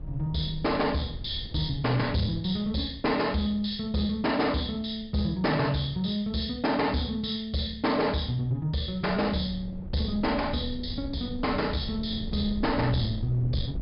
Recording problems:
treble missing; nothing above 5.5 kHz
distortion; soft clipping, signal-to-distortion ratio 12 dB
wind on the microphone; below 130 Hz, SNR 12 dB

